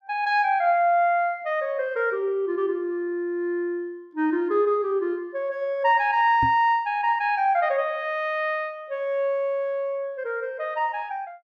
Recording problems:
knock on the microphone; at 6.5 s; peak -3 dB vs average level

